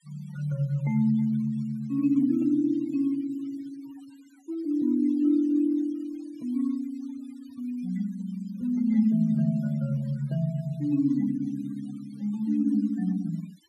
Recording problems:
denoising artefacts; signal-to-artefact ratio 28 dB

